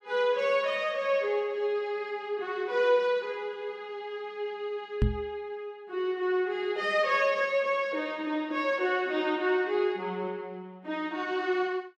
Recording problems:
knock on the microphone; at 5 s; peak +7 dB vs average level

